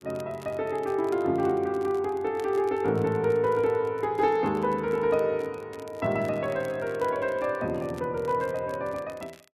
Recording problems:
crackle; vinyl, SNR 27 dB

